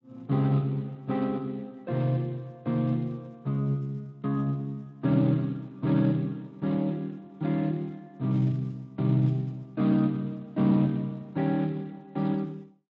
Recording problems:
codec artefacts; Speex, log-spectral distance 2 dB

